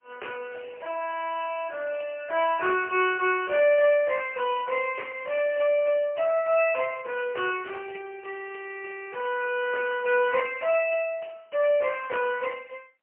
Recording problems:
telephone audio; 320 Hz to 3 kHz, AMR-NB, then MP3

